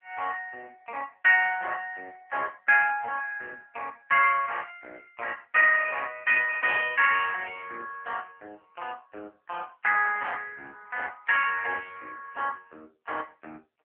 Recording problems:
telephone audio; 320 Hz to 2.8 kHz, AMR-NB

